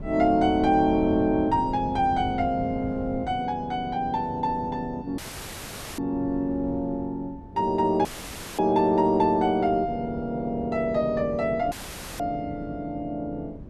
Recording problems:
wind on the microphone; below 230 Hz, SNR 15 dB
dropout; at 5 s for 1 s, at 8 s for 0.5 s and at 12 s; filled with static

